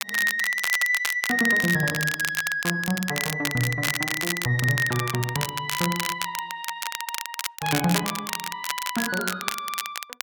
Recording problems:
crackle; vinyl, SNR 4 dB

